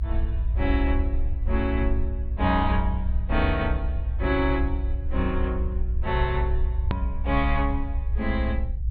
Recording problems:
treble missing; nothing above 4.5 kHz
rumble; below 62 Hz, SNR -1 dB
hard cut with a click; at 7 s

